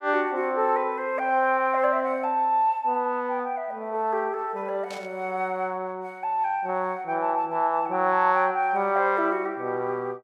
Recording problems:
static burst; at 5 s; peak -12 dB vs average level

